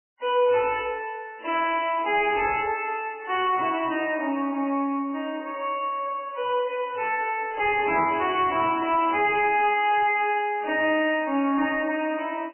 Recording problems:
codec artefacts; MP3, log-spectral distance 4 dB, nothing above 2.5 kHz
distorted audio; soft clipping, signal-to-distortion ratio 9 dB

